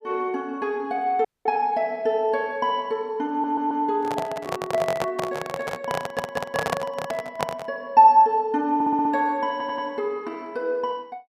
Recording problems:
dropout; at 1.5 s
stutter; 4 times, first at 3.5 s
microphone handling noise; from 4 to 7.5 s; peak +3 dB vs average level

